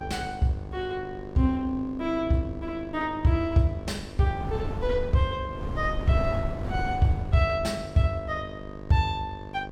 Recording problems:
electrical hum; 50 Hz, harmonics up to 1.8 kHz, SNR 14 dB
wind on the microphone; below 160 Hz, SNR 11 dB

